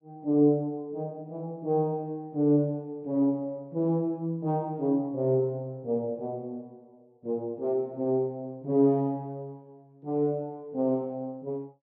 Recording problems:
none

